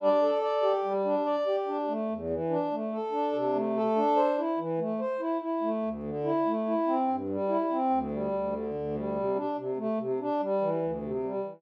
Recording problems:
none

